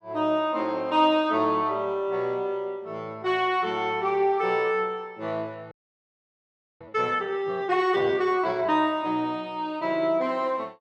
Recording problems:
audio freezing; at 5.5 s for 1 s

